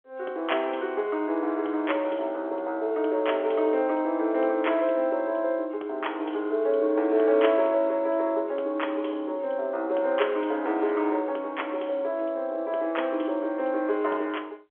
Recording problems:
phone line; 300 Hz to 3.6 kHz, G.711

